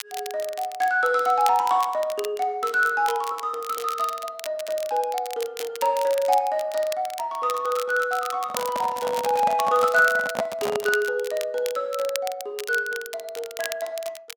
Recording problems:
crackle; vinyl, SNR 14 dB
microphone handling noise; from 8.5 to 11 s; peak +2 dB vs average level

